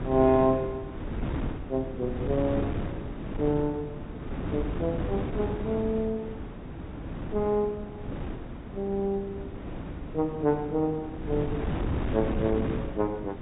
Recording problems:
treble missing; nothing above 4 kHz
wind on the microphone; below 350 Hz, SNR 5 dB

